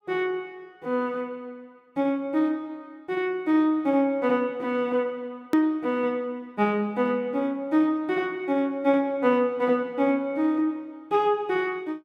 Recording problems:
click at an edit; at 5.5 s

